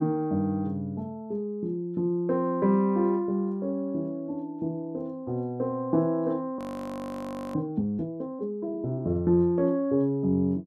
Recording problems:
frozen audio; at 6.5 s for 1 s

